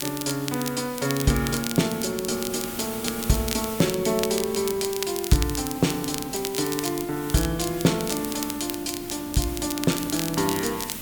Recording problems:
hiss; slope 0 dB per octave, SNR 11 dB
wind on the microphone; below 380 Hz, SNR 17 dB
crackle; vinyl, SNR 7 dB

